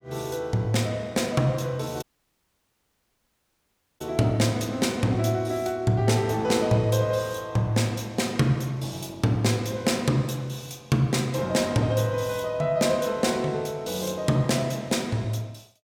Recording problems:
dropout; at 2 s for 2 s

